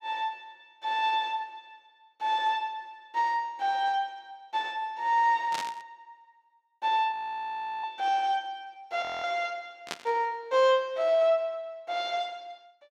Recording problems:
static burst; at 5.5 s and at 10 s; peak -1 dB vs average level
frozen audio; at 7 s for 0.5 s and at 9 s

